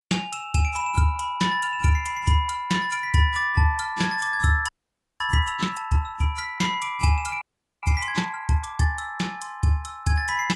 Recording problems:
lossy codec; AAC, log-spectral distance 2 dB
audio freezing; at 4.5 s for 0.5 s and at 7.5 s

